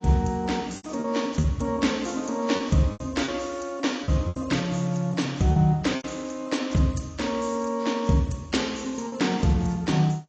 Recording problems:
codec artefacts; AAC, log-spectral distance 5 dB, nothing above 7.3 kHz
packet loss; 6% of the sound replaced, filled with repeated pitch periods

